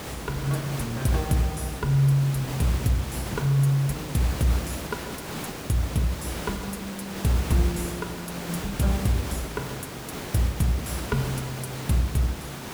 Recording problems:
background hiss; slope -4 dB per octave, SNR 8 dB

